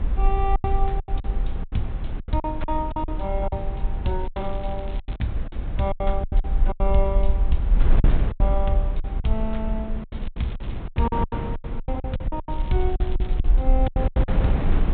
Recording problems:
low-pass filter; nothing above 4 kHz
rumble; below 48 Hz, SNR -2 dB
wind noise; below 210 Hz, SNR 3 dB
lost packets; 15% of the sound replaced, filled with silence
crackle; from 4 to 5 s, at 10 s and at 13 s; loose cable, SNR 21 dB

